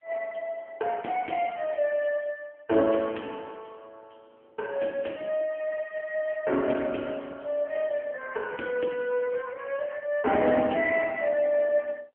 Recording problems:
phone line; 240 Hz to 3.2 kHz, AMR-NB

